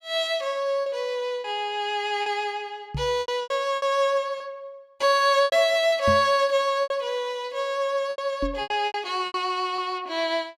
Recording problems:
lost packets; 9% of the sound replaced, filled with repeated pitch periods
knock on the microphone; at 3 s, at 6 s and at 8.5 s; peak 0 dB vs average level

